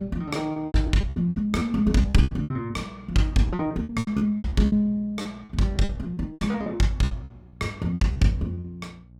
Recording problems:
electrical hum; 60 Hz, harmonics up to 540 Hz, SNR 24 dB
packet loss; 18% of the sound replaced, filled with repeated pitch periods

